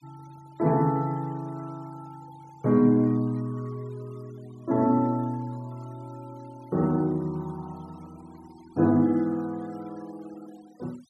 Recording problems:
noise reduction artefacts; signal-to-artefact ratio 28 dB

